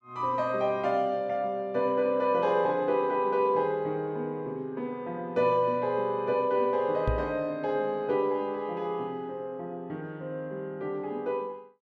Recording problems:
microphone bump; at 7 s; peak +3 dB vs average level

